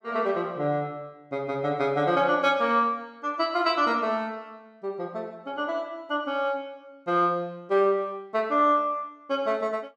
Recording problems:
none

